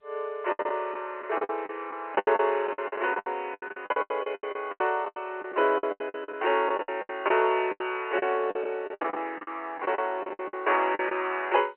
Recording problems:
telephone audio; 300 Hz to 3.1 kHz, G.711
packet loss; 20% of the sound replaced, filled with the last packet

